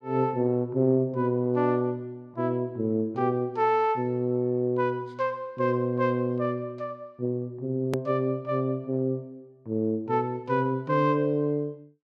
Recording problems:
hard cut with a click; at 8 s

